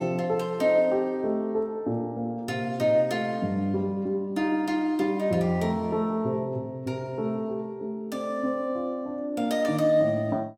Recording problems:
none

